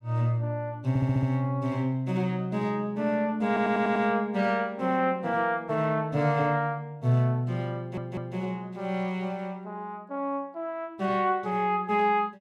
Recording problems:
audio stuttering; at 1 s, at 3.5 s and at 8 s

